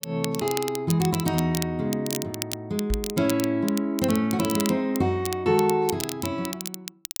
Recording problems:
crackling; vinyl, SNR 9 dB
microphone bump; at 3 s; peak 0 dB vs average level

